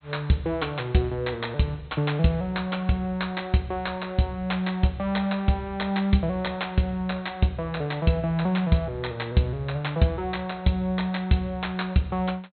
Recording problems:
treble missing; nothing above 4.2 kHz

